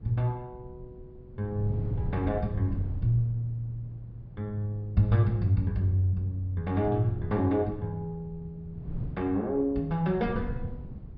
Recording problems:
treble cut off; nothing above 5.5 kHz
wind on the microphone; below 140 Hz, SNR 12 dB

